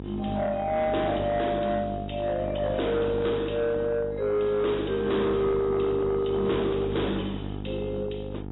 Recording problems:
lossy compression; AAC, log-spectral distance 5 dB, nothing above 3.8 kHz
distorted audio; soft clipping, signal-to-distortion ratio 11 dB
electrical hum; 50 Hz, harmonics up to 950 Hz, SNR 8 dB

